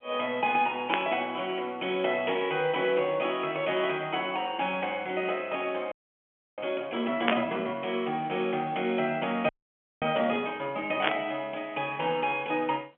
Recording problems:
telephone audio; 280 Hz to 3.4 kHz, G.711
burst of static; at 1 s, at 7.5 s and at 11 s; peak +8 dB vs average level
audio freezing; at 6 s for 0.5 s and at 9.5 s for 0.5 s

